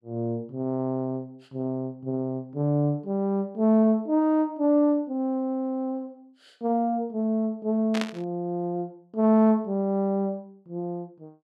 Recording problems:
static burst; at 8 s; peak -1 dB vs average level

